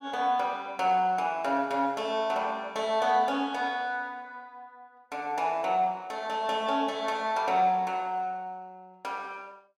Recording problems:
none

